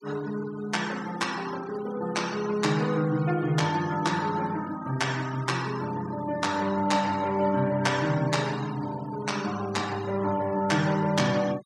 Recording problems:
denoising artefacts; signal-to-artefact ratio 16 dB

